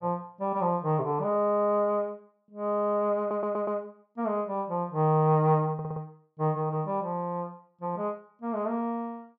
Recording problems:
audio stuttering; at 3 s and at 5.5 s

